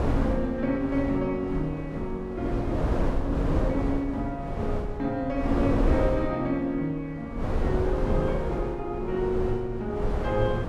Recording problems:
wind noise; below 370 Hz, SNR 2 dB

